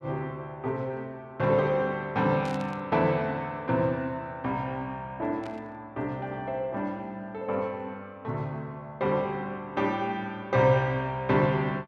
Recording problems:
burst of static; at 2.5 s and at 5.5 s; peak -12 dB vs average level

